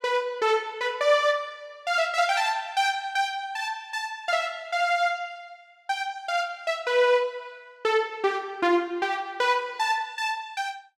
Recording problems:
none

